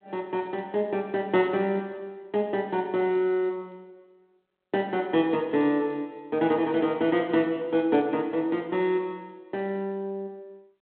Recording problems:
telephone audio; 220 Hz to 3.4 kHz, G.726

